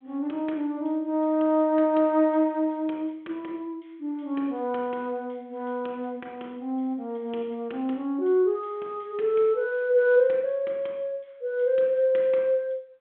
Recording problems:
phone line; 280 Hz to 3.7 kHz, G.726

